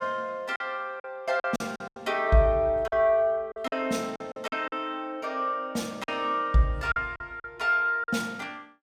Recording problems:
lost packets; 9% of the sound replaced, filled with silence

